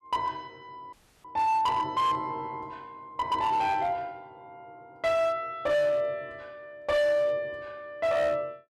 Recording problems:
distorted audio; hard clipping, signal-to-distortion ratio 10 dB
audio cutting out; at 1 s

